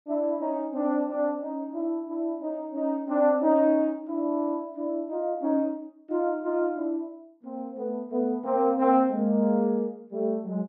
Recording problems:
none

